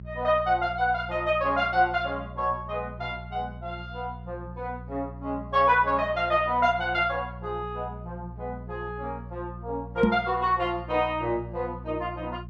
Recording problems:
electrical hum; 60 Hz, harmonics up to 420 Hz, SNR 14 dB
knock on the microphone; at 10 s; peak +8 dB vs average level

